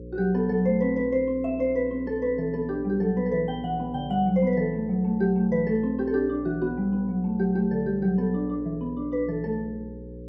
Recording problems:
mains hum; 60 Hz, harmonics up to 540 Hz, SNR 15 dB

